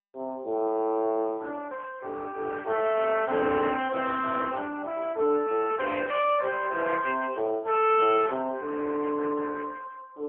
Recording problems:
telephone audio; 260 Hz to 3.4 kHz, AMR-NB

